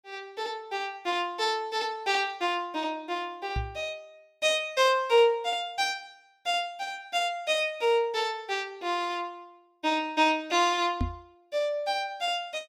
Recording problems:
knock on the microphone; at 3.5 s and at 11 s; peak +2 dB vs average level

